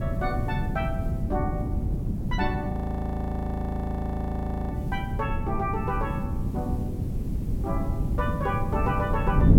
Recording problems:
background hiss; slope +1 dB per octave, SNR 25 dB
wind noise; below 190 Hz, SNR -3 dB
frozen audio; at 2.5 s for 2 s

